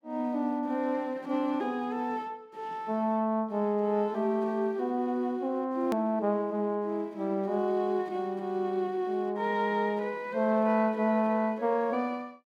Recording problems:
hard cut with a click; at 6 s

